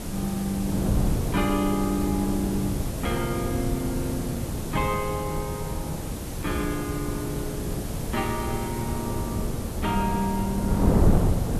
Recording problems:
background hiss; slope -2 dB per octave, SNR 9 dB
wind on the microphone; below 270 Hz, SNR 0 dB

